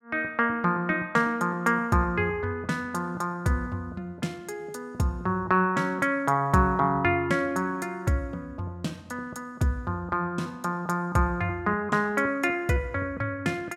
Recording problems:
none

